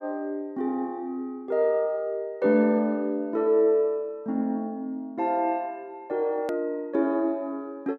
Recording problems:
edit click; at 6.5 s

